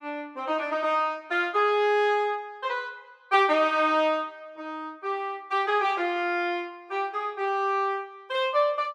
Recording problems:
none

